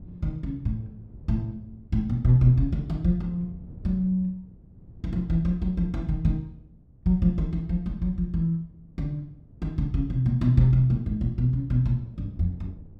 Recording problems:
wind on the microphone; below 160 Hz, SNR 22 dB

